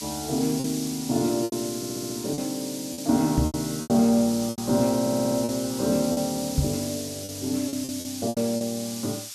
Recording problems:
background hiss; slope +6 dB per octave, SNR 8 dB
lost packets; 9% of the sound replaced, filled with repeated pitch periods
stutter; at 2 s and at 5 s
microphone thump; at 3.5 s and at 6.5 s; peak +6 dB vs average level

